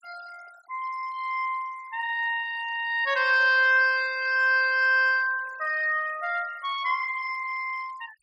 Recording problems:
denoising artefacts; signal-to-artefact ratio 24 dB

